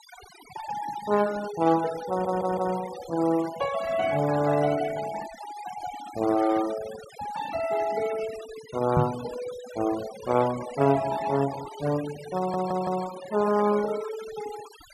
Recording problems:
denoising artefacts; signal-to-artefact ratio 14 dB
audio stuttering; at 2 s and at 12 s
microphone thump; at 9 s; peak +6 dB vs average level

